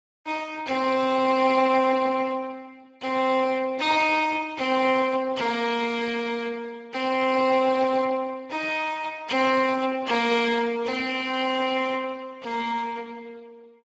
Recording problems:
lossy codec; Speex, log-spectral distance 4 dB, nothing above 7.3 kHz

